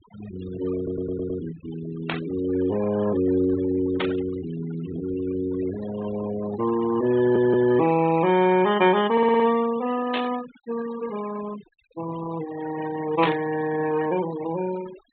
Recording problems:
low-pass filter; nothing above 4 kHz
noise reduction artefacts; signal-to-artefact ratio 14 dB
audio stuttering; at 1 s, at 7 s and at 9 s
burst of static; 4 times, first at 2 s; peak +1 dB vs average level

